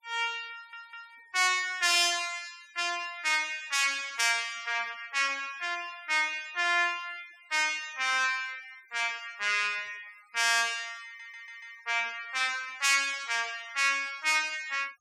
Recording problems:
denoising artefacts; signal-to-artefact ratio 25 dB
audio stuttering; at 0.5 s and at 11 s

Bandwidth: 16.5 kHz